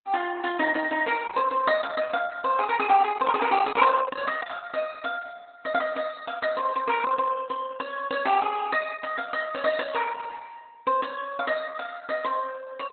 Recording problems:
lossy compression; Opus, log-spectral distance 5 dB, nothing above 4 kHz

